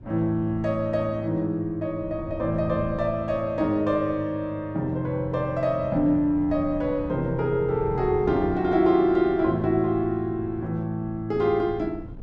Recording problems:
wind noise; below 200 Hz, SNR 16 dB

